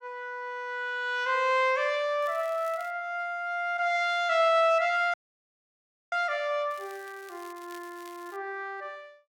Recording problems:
crackling; at 2 s and from 6.5 to 8.5 s; loose cable, SNR 25 dB
dropout; at 5 s for 1 s

